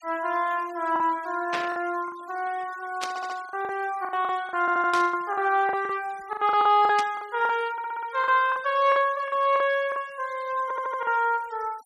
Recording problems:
denoising artefacts; signal-to-artefact ratio 24 dB
lost packets; 11% of the sound replaced, filled with the last packet
burst of static; 4 times, first at 1.5 s; peak -1 dB vs average level
audio stuttering; 4 times, first at 3 s

